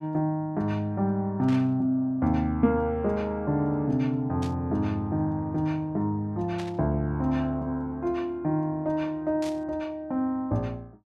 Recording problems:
static burst; 4 times, first at 1.5 s; peak -9 dB vs average level

